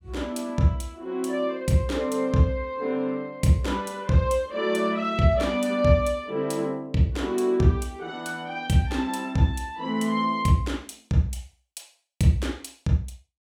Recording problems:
none

